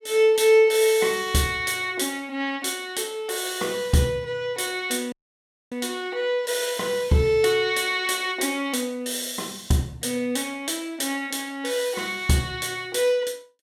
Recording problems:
dropout; at 5 s for 0.5 s

